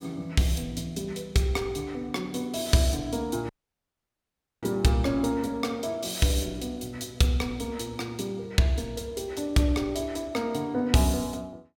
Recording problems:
dropout; at 3.5 s for 1 s

